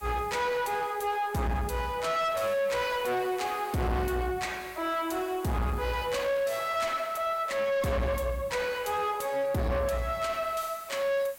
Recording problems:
distortion; soft clipping, signal-to-distortion ratio 7 dB
hiss; SNR 22 dB

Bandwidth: 16.5 kHz